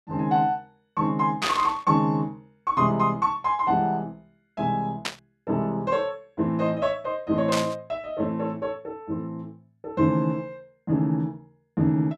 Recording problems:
burst of static; at 1.5 s, at 5 s and at 7.5 s; peak +3 dB vs average level

